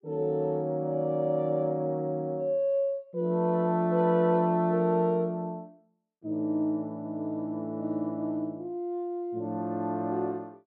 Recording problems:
none

